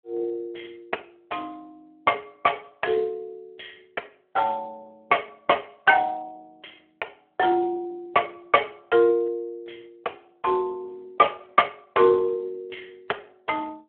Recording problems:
telephone audio; 340 Hz to 3.3 kHz, Speex

